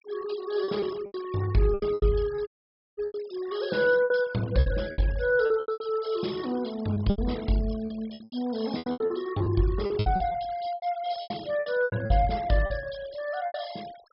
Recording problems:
treble missing; nothing above 5.2 kHz
denoising artefacts; signal-to-artefact ratio 19 dB
packet loss; 14% of the sound replaced, filled with repeated pitch periods
audio cutting out; at 2.5 s for 0.5 s

